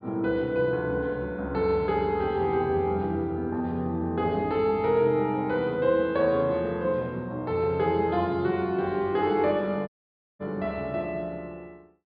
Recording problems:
low-pass filter; nothing above 5 kHz
dropout; at 10 s for 0.5 s

